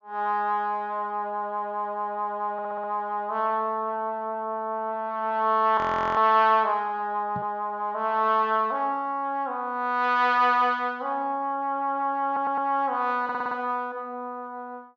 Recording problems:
low-pass filter; nothing above 7.3 kHz
stutter; at 2.5 s, at 12 s and at 13 s
frozen audio; at 6 s
microphone bump; at 7.5 s; peak -7 dB vs average level

